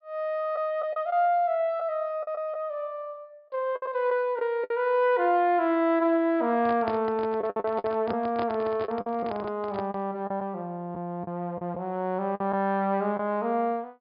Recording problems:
treble missing; nothing above 5 kHz
lost packets; 6% of the sound replaced, filled with the last packet
handling noise; from 6.5 to 10 s; peak -4 dB vs average level

